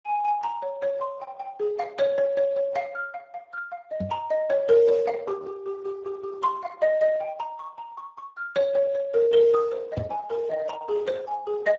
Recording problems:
lossy compression; Opus, then Speex, log-spectral distance 3 dB, nothing above 7.3 kHz
microphone thump; at 4 s and at 10 s; peak -1 dB vs average level

